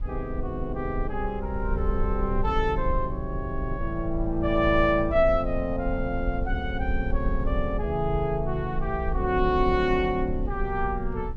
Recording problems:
low-frequency rumble; below 60 Hz, SNR 6 dB

